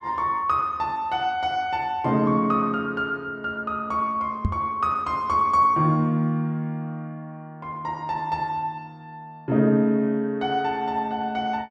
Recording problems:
microphone bump; at 4.5 s; peak +4 dB vs average level

